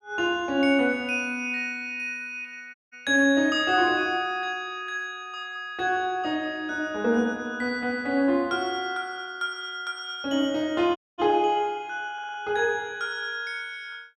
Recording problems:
dropout; at 2.5 s and at 11 s
audio stuttering; at 12 s

